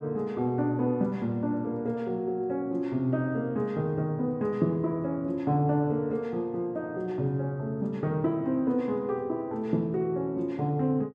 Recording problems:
none

